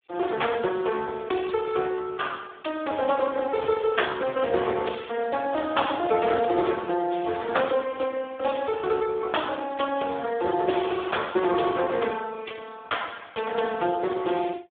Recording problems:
phone line; 280 Hz to 3.5 kHz, Speex

